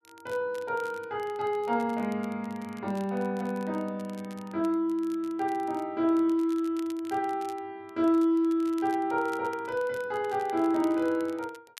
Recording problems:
crackling; vinyl, SNR 25 dB

